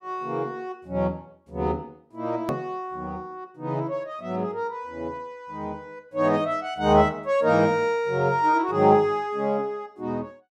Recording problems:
click at an edit; at 2.5 s

